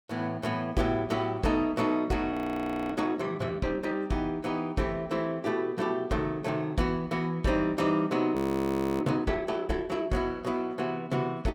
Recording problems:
audio freezing; at 2.5 s for 0.5 s and at 8.5 s for 0.5 s

